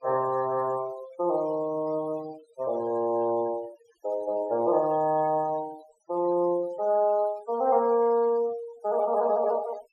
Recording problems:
noise reduction artefacts; signal-to-artefact ratio 22 dB

